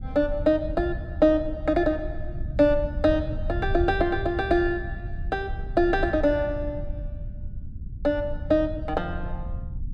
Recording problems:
rumble; below 88 Hz, SNR 9 dB

